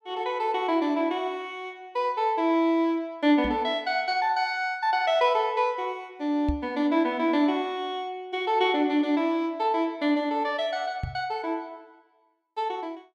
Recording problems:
knock on the microphone; at 3.5 s, at 6.5 s and at 11 s; peak 0 dB vs average level

